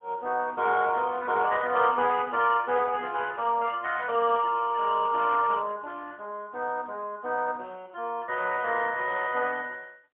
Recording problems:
phone line; 220 Hz to 2.9 kHz, AMR-NB, then MP3

